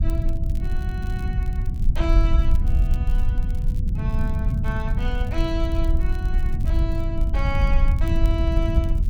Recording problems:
low-frequency rumble; below 120 Hz, SNR -5 dB
wind noise; below 58 Hz, SNR -6 dB
crackle; vinyl, SNR 21 dB

